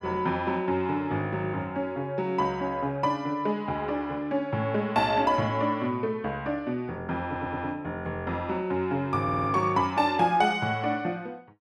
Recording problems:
audio stuttering; at 7.5 s and at 9 s

